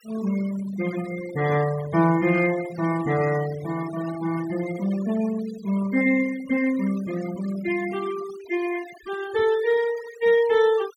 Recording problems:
noise reduction artefacts; signal-to-artefact ratio 16 dB

